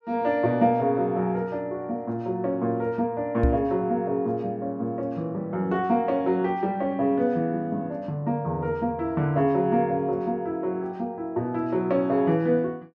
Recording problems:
microphone bump; at 3.5 s; peak +7 dB vs average level

